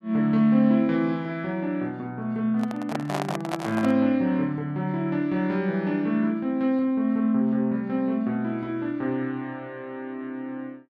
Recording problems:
handling noise; from 2.5 to 4 s; peak 0 dB vs average level

